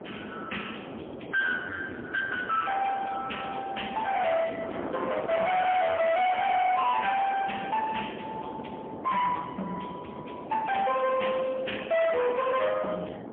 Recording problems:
phone line; 260 Hz to 3.3 kHz, AMR-NB, then MP3
distorted audio; soft clipping, signal-to-distortion ratio 6 dB
wind noise; below 960 Hz, SNR 11 dB

